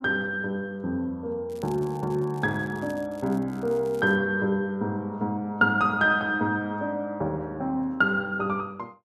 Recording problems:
crackling; from 1.5 to 4 s; loose cable, SNR 27 dB

